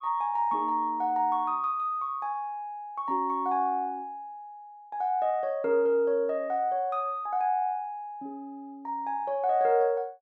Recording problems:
none

